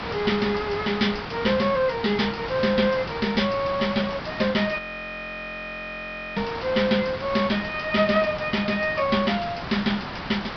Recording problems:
treble missing; nothing above 5.5 kHz
hiss; SNR 9 dB
frozen audio; at 5 s for 1.5 s

